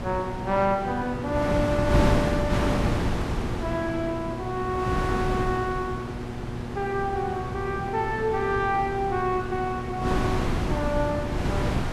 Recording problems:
electrical hum; 60 Hz, harmonics up to 1.9 kHz, SNR 9 dB
wind on the microphone; below 480 Hz, SNR 1 dB

